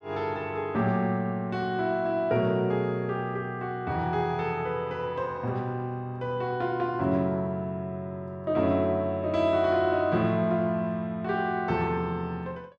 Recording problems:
none

